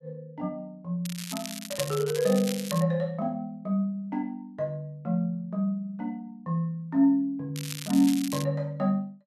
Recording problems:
crackling; from 1 to 3 s and at 7.5 s; loose cable, SNR 9 dB

